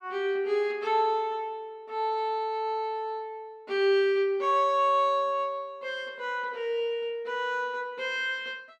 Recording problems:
none

